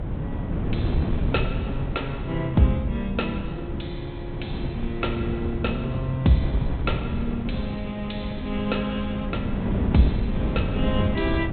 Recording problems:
low-pass filter; nothing above 4 kHz
wind on the microphone; below 210 Hz, SNR 2 dB

